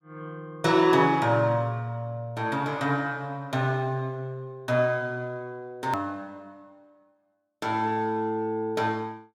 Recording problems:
click at an edit; at 6 s

